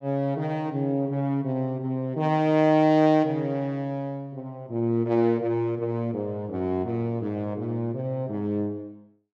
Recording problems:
none

